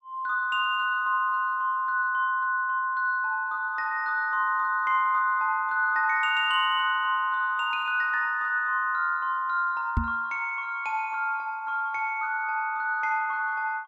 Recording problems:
microphone bump; at 10 s; peak +3 dB vs average level

